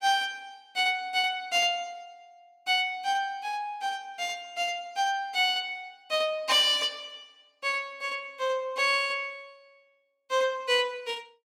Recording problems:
none

